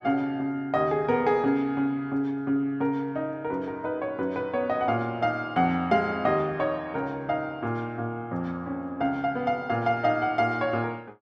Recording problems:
none

